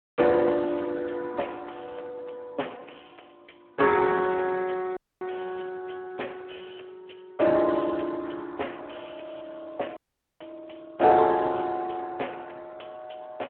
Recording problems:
telephone audio; 300 Hz to 3.3 kHz, Speex
audio cutting out; at 5 s and at 10 s

